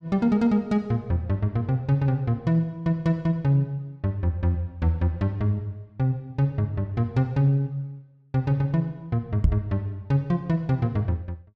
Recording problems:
knock on the microphone; at 9.5 s; peak +7 dB vs average level

